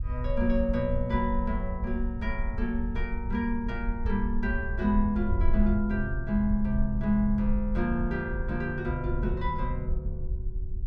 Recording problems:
wind noise; below 62 Hz, SNR 3 dB

